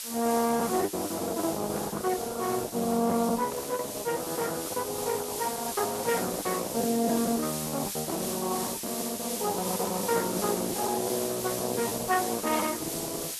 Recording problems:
codec artefacts; Speex, then Opus, log-spectral distance 3 dB
background hiss; slope +4 dB per octave, SNR 5 dB
lost packets; 9% of the sound replaced, filled with the last packet
static burst; at 3.5 s, at 6 s and at 8 s; peak -13 dB vs average level

